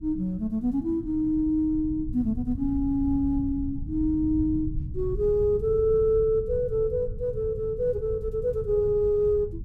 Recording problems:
rumble; below 120 Hz, SNR 11 dB

